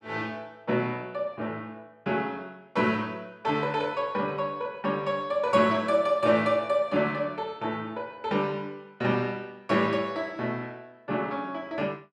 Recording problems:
none

